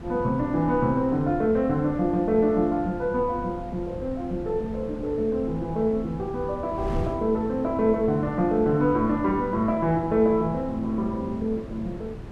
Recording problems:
wind on the microphone; below 240 Hz, SNR 13 dB

